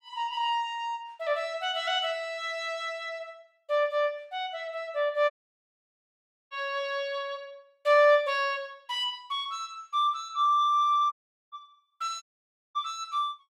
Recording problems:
audio cutting out; at 5.5 s for 1 s, at 11 s and at 12 s for 0.5 s

